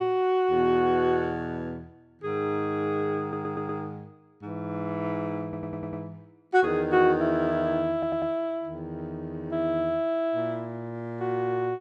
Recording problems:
audio stuttering; at 3 s, at 5.5 s and at 8 s

